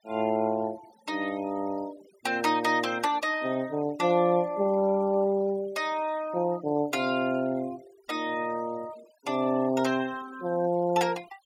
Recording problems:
noise reduction artefacts; signal-to-artefact ratio 23 dB

